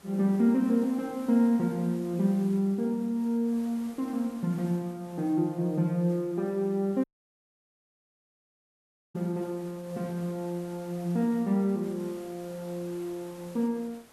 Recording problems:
hiss; slope -4 dB per octave, SNR 23 dB
audio cutting out; at 7 s for 2 s

